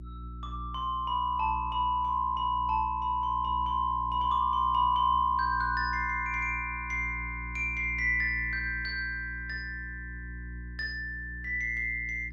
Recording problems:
hum; 60 Hz, harmonics up to 360 Hz, SNR 13 dB

